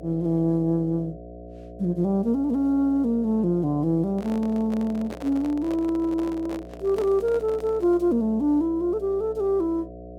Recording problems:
hum; 60 Hz, harmonics up to 720 Hz, SNR 17 dB
microphone handling noise; from 4 to 8 s; peak -9 dB vs average level

